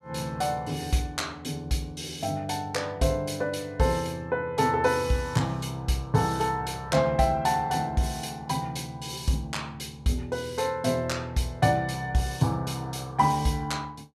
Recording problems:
none

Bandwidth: 14.5 kHz